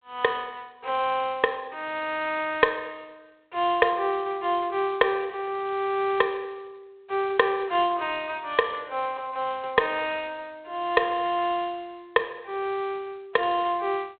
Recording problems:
phone line; 340 Hz to 3.9 kHz, G.726

